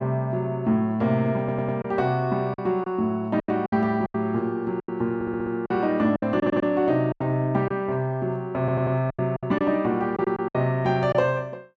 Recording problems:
packet loss; 9% of the sound replaced, filled with silence
audio stuttering; 4 times, first at 1.5 s

